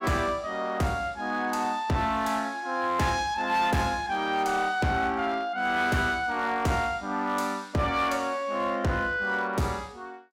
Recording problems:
distorted audio; hard clipping, uneven, signal-to-distortion ratio 11 dB

